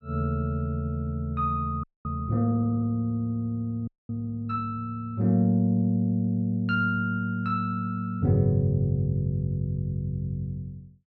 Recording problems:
audio freezing; at 2 s and at 4 s

